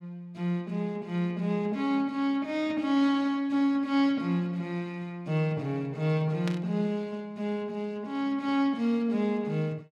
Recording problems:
static burst; at 6.5 s; peak -5 dB vs average level

